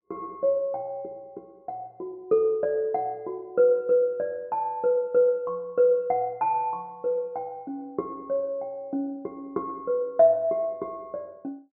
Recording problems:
none

